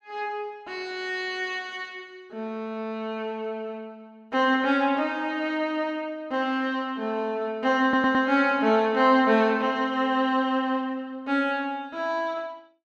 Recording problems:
audio stuttering; at 8 s

